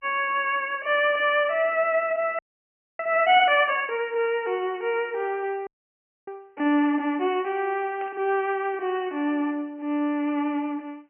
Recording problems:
phone line; 220 Hz to 3.1 kHz, G.711
frozen audio; at 2.5 s for 0.5 s and at 5.5 s for 0.5 s
burst of static; at 7 s and at 8 s; peak -15 dB vs average level

